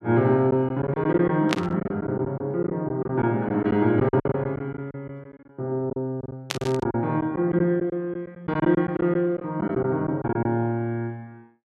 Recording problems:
packet loss; 10% of the sound replaced, filled with silence
burst of static; at 1.5 s and at 6.5 s; peak +4 dB vs average level

